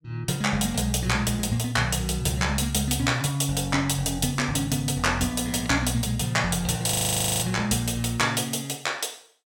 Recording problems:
audio freezing; at 7 s for 0.5 s

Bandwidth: 17.5 kHz